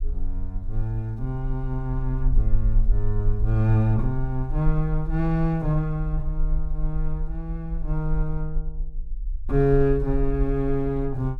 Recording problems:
low-frequency rumble; below 40 Hz, strongest tone 20 Hz, SNR 4 dB

